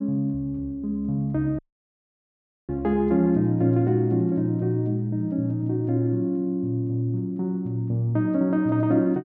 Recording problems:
audio cutting out; at 1.5 s for 1 s

